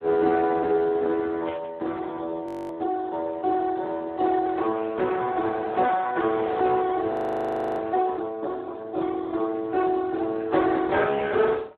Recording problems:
phone line; 280 Hz to 2 kHz, Speex
static burst; at 1.5 s; peak -11 dB vs average level
frozen audio; at 2.5 s and at 7 s for 0.5 s

